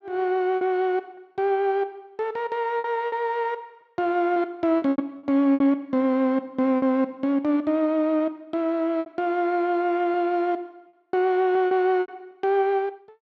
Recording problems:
lost packets; 6% of the sound replaced, filled with repeated pitch periods

